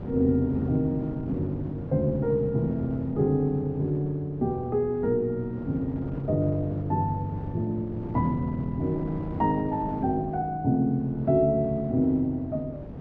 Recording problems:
wind on the microphone; below 340 Hz, SNR 12 dB

